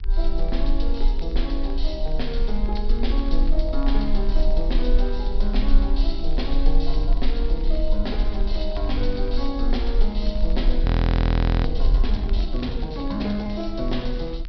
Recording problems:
treble missing; nothing above 5.5 kHz
low-frequency rumble; below 40 Hz, strongest tone 20 Hz, SNR -4 dB
wind noise; below 82 Hz, SNR 10 dB
crackling; vinyl, SNR 24 dB
frozen audio; at 11 s for 1 s

